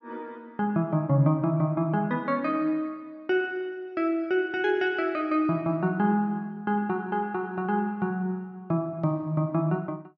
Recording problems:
treble cut off; nothing above 7.2 kHz

